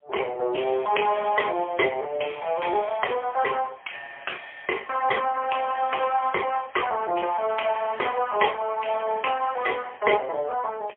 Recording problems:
phone line; 320 Hz to 3.2 kHz, AMR-NB, then MP3

